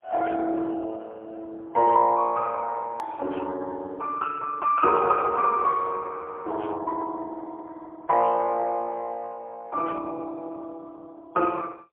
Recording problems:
phone line; 320 Hz to 2.3 kHz, AMR-NB, then MP3
hard cut with a click; at 3 s

